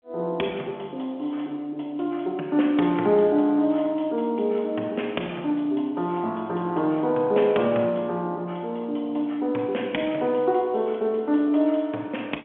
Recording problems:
telephone audio; 260 Hz to 3.3 kHz, G.711

